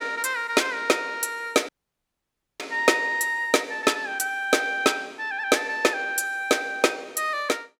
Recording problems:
audio cutting out; at 1.5 s for 1 s

